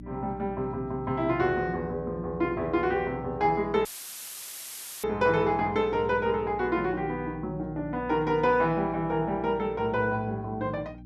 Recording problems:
hum; 60 Hz, harmonics up to 300 Hz, SNR 15 dB
audio cutting out; at 4 s for 1 s; filled with static

